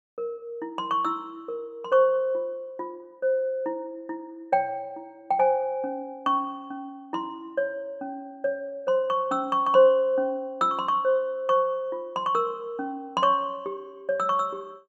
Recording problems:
none

